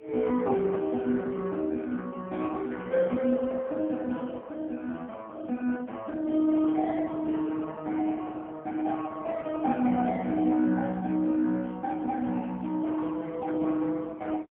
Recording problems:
phone line; 190 Hz to 2.2 kHz, AMR-NB, then MP3

